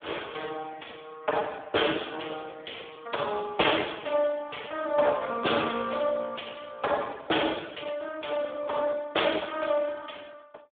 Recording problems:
telephone audio; 340 Hz to 3.5 kHz, Speex

